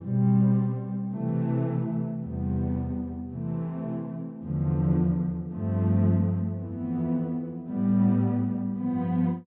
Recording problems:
low-pass filter; nothing above 4 kHz

